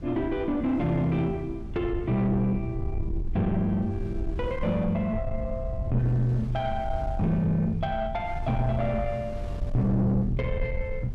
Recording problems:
distortion; soft clipping, signal-to-distortion ratio 10 dB
rumble; below 100 Hz, SNR 7 dB
wind noise; below 360 Hz, SNR 20 dB

